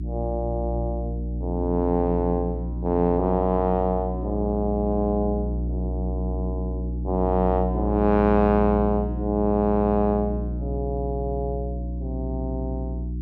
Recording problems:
hum; 60 Hz, harmonics up to 360 Hz, SNR 4 dB

